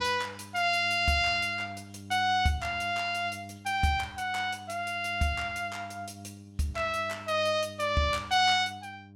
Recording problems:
mains hum; 50 Hz, harmonics up to 700 Hz, SNR 19 dB

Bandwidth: 17.5 kHz